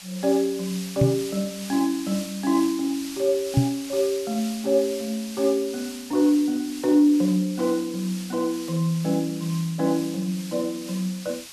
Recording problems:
hiss; slope +3 dB per octave, SNR 13 dB
microphone thump; at 1 s and at 3.5 s; peak +8 dB vs average level

